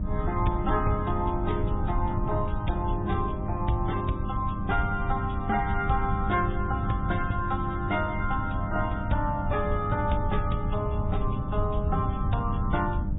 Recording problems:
treble missing; nothing above 3.7 kHz
lossy codec; MP3, log-spectral distance 2 dB
hum; 50 Hz, harmonics up to 900 Hz, SNR 6 dB
low-frequency rumble; below 120 Hz, SNR 2 dB

